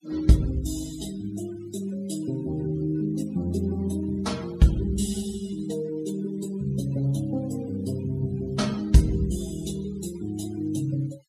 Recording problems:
noise reduction artefacts; signal-to-artefact ratio 20 dB

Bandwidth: 14.5 kHz